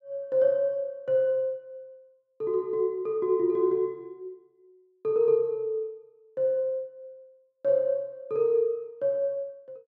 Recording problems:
none

